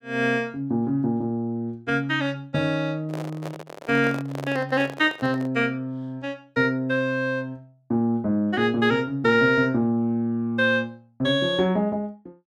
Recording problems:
microphone handling noise; from 3 to 5.5 s; peak -7 dB vs average level

